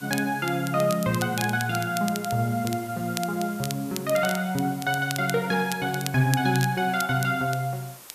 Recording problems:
hiss; slope -2 dB per octave, SNR 18 dB
crackling; vinyl, SNR 12 dB

